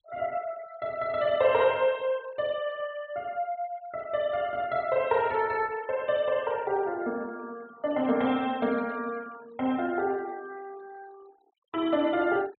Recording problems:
treble cut off; nothing above 4.2 kHz
denoising artefacts; signal-to-artefact ratio 24 dB

